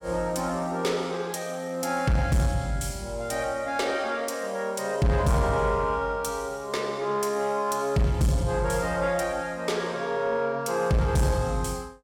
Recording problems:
distorted audio; soft clipping, signal-to-distortion ratio 11 dB

